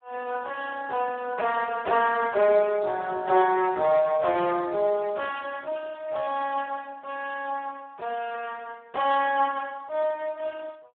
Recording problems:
telephone audio; 300 Hz to 2.7 kHz, Speex

